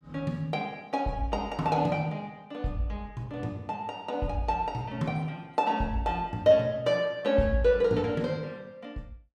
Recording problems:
none

